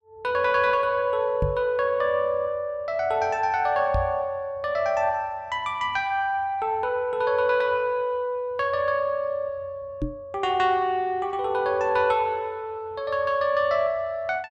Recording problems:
microphone thump; at 1.5 s, at 4 s and at 10 s; peak +1 dB vs average level

